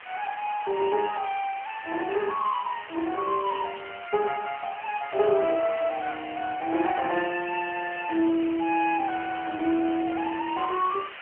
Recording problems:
phone line; 300 Hz to 2.8 kHz, AMR-NB
background hiss; SNR 14 dB

